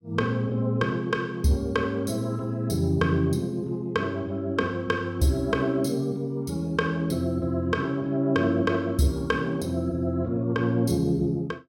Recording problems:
none

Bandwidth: 16.5 kHz